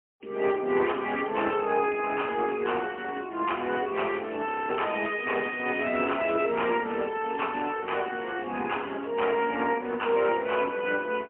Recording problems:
phone line; 260 Hz to 3.1 kHz, AMR-NB, then MP3
audio freezing; at 4.5 s

